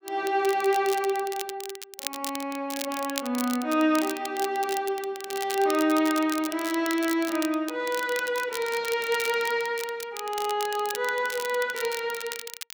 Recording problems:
crackle; vinyl, SNR 10 dB

